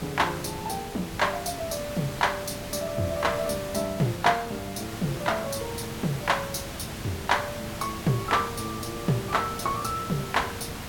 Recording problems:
hiss; slope -3 dB per octave, SNR 8 dB

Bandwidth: 17 kHz